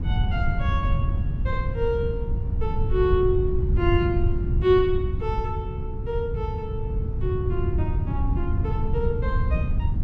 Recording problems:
wind on the microphone; below 110 Hz, SNR -1 dB

